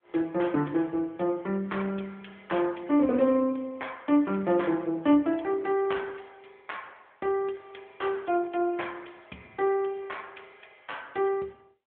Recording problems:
phone line; 130 Hz to 3.4 kHz, AMR-NB

